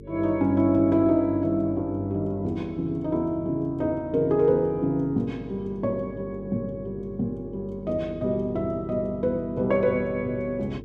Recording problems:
electrical hum; 50 Hz, harmonics up to 450 Hz, SNR 17 dB

